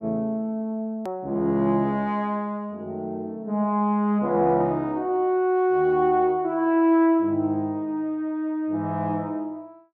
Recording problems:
hard cut with a click; at 1 s

